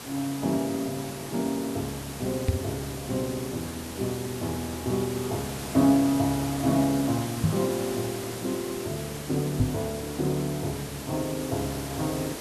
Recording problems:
background hiss; slope -4 dB per octave, SNR 8 dB
microphone bump; at 2.5 s, at 7.5 s and at 9.5 s; peak +8 dB vs average level

